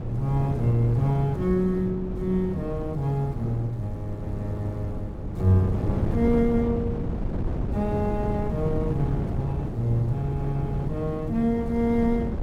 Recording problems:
wind on the microphone; below 240 Hz, SNR 5 dB

